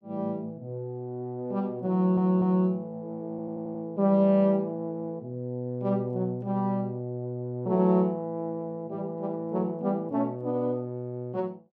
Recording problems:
audio stuttering; at 2 s and at 3.5 s

